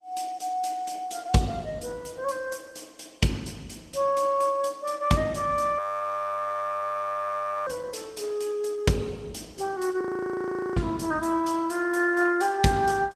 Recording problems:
codec artefacts; Opus, log-spectral distance 3 dB, nothing above 14.3 kHz
audio freezing; at 6 s for 2 s and at 10 s for 1 s

